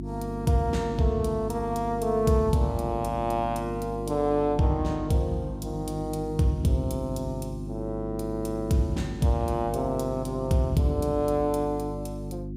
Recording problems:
hum; 50 Hz, harmonics up to 350 Hz, SNR 8 dB

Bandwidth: 15.5 kHz